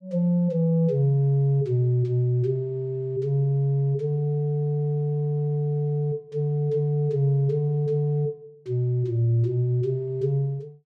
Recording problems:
none

